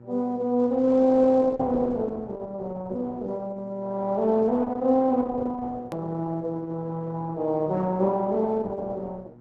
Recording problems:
lossy compression; Opus, log-spectral distance 2 dB
electrical hum; 60 Hz, harmonics up to 960 Hz, SNR 22 dB
edit click; at 6 s

